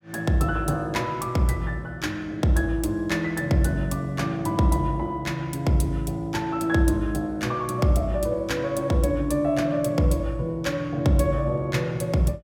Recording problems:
none

